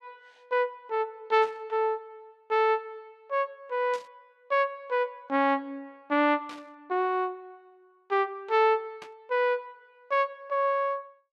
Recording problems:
burst of static; 4 times, first at 1.5 s; peak -13 dB vs average level

